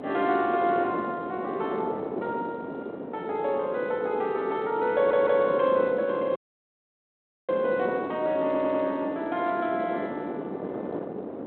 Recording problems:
telephone audio; 280 Hz to 3.9 kHz, G.726
wind noise; below 580 Hz, SNR 8 dB
audio stuttering; at 5 s and at 8.5 s
dropout; at 6.5 s for 1 s

